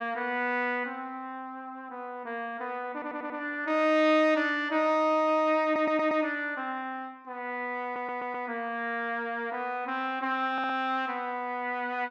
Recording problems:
audio stuttering; 4 times, first at 3 s

